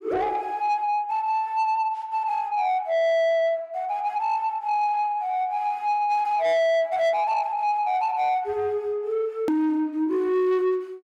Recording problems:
distorted audio; soft clipping, signal-to-distortion ratio 10 dB
edit click; at 9.5 s

